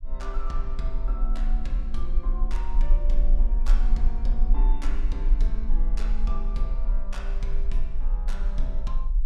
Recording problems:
low-frequency rumble; below 36 Hz, strongest tone 20 Hz, SNR -10 dB

